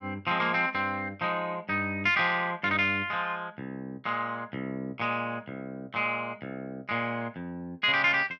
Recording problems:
none

